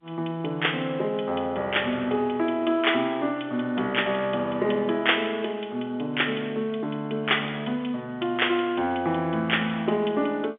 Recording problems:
telephone audio; 170 Hz to 3.6 kHz, G.711

